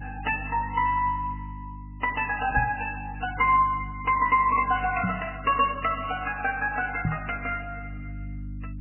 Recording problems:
codec artefacts; MP3, log-spectral distance 6 dB, nothing above 2.7 kHz
mains hum; 50 Hz, harmonics up to 300 Hz, SNR 14 dB
knock on the microphone; at 2.5 s, at 5 s and at 7 s; peak +3 dB vs average level

